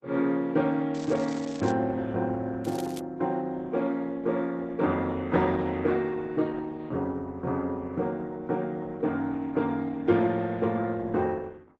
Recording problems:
codec artefacts; Opus, log-spectral distance 3 dB
crackle; at 1 s and at 2.5 s; loose cable, SNR 18 dB

